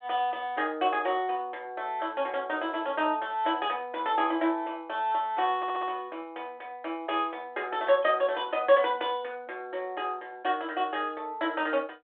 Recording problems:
telephone audio; 260 Hz to 3.7 kHz, G.726
audio stuttering; at 5.5 s

